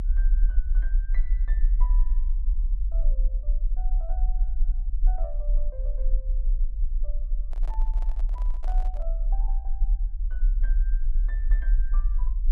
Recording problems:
low-frequency rumble; below 38 Hz, strongest tone 34 Hz, SNR -20 dB
microphone handling noise; from 7.5 to 9 s; peak +5 dB vs average level

